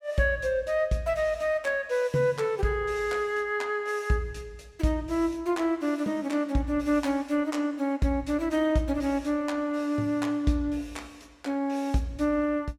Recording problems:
none

